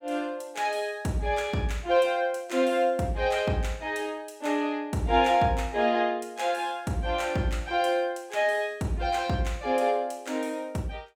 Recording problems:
none

